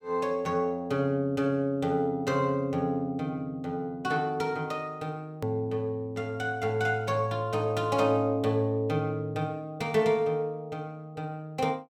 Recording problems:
click at an edit; at 5.5 s

